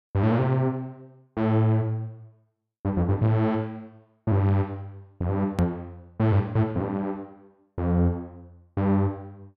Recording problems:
edit click; at 5.5 s

